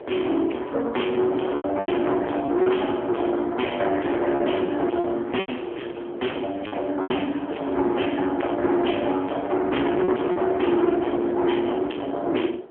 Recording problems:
telephone audio; 260 Hz to 3.3 kHz, AMR-NB
distortion; soft clipping, signal-to-distortion ratio 6 dB
wind noise; below 700 Hz, SNR 20 dB
lost packets; 5% of the sound replaced, filled with repeated pitch periods

